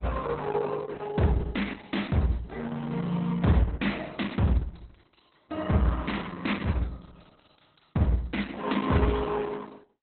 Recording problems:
lossy codec; Opus, log-spectral distance 9 dB, nothing above 4 kHz

